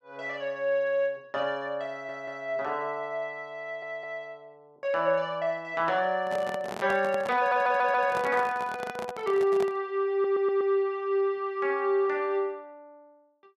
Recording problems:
audio stuttering; 4 times, first at 2 s
microphone handling noise; from 6 to 10 s; peak -5 dB vs average level

